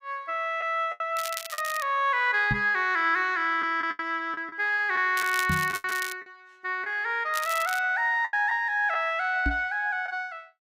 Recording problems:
lost packets; 6% of the sound replaced, filled with the last packet
crackling; at 1 s, at 5 s and at 7.5 s; loose cable, SNR 11 dB
knock on the microphone; at 2.5 s, at 5.5 s and at 9.5 s; peak 0 dB vs average level

